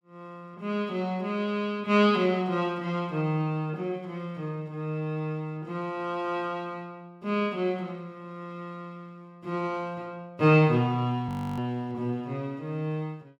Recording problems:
audio freezing; at 11 s

